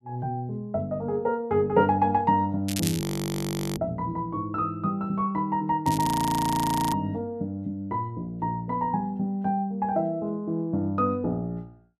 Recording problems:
crackle; at 2.5 s and at 6 s; loose cable, SNR 9 dB
frozen audio; at 3 s for 1 s and at 6 s for 1 s

